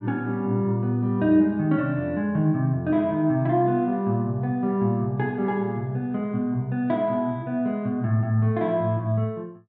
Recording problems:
none

